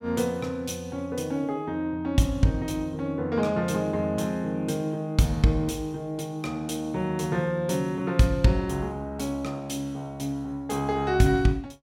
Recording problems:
none

